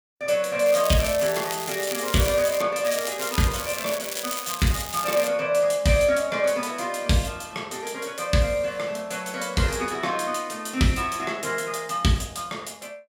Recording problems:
crackling; from 0.5 to 2.5 s and from 3 to 5.5 s; loose cable, SNR 7 dB

